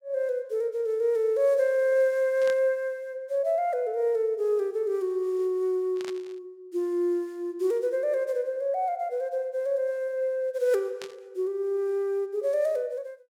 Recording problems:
static burst; at 2.5 s, at 6 s and at 11 s; peak -9 dB vs average level

